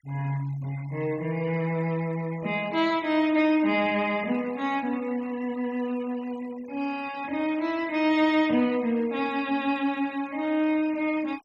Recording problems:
noise reduction artefacts; signal-to-artefact ratio 22 dB

